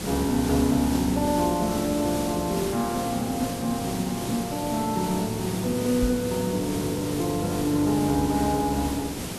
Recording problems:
background hiss; SNR 7 dB
knock on the microphone; at 6 s; peak 0 dB vs average level

